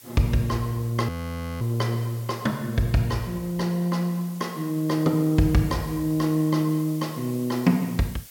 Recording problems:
background hiss; SNR 20 dB
frozen audio; at 1 s for 0.5 s

